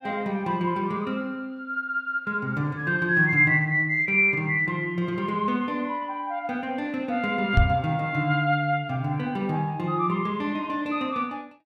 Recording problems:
microphone bump; at 7.5 s; peak +7 dB vs average level

